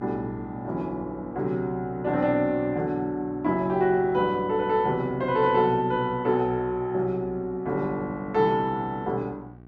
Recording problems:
electrical hum; 60 Hz, harmonics up to 1.5 kHz, SNR 21 dB

